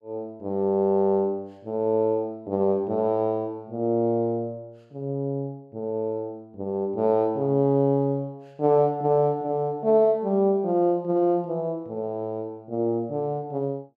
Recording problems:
none

